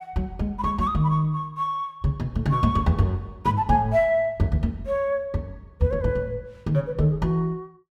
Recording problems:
none

